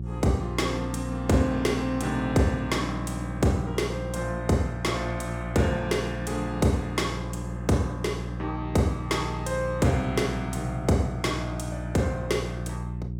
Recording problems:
hum; 60 Hz, harmonics up to 420 Hz, SNR 6 dB

